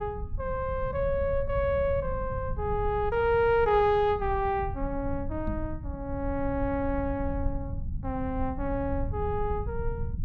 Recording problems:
rumble; below 100 Hz, SNR 8 dB
microphone bump; at 5.5 s; peak -5 dB vs average level

